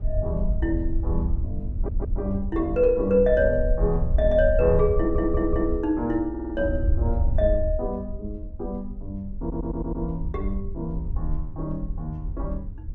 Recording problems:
wind noise; below 70 Hz, SNR 4 dB
stutter; 4 times, first at 1.5 s

